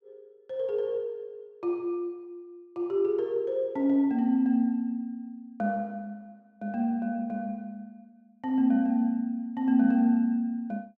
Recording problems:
none

